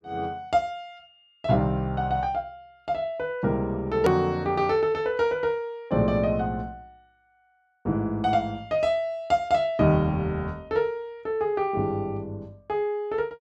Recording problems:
click at an edit; at 4 s

